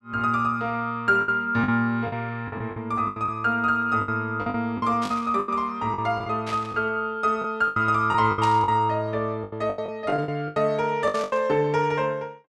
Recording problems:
packet loss; 12% of the sound replaced, filled with the last packet
burst of static; 4 times, first at 5 s; peak -7 dB vs average level

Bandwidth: 12.5 kHz